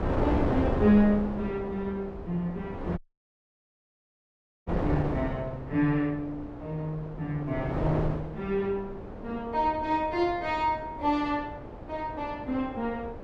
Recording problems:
wind on the microphone; below 570 Hz, SNR 6 dB
dropout; at 3 s for 1.5 s

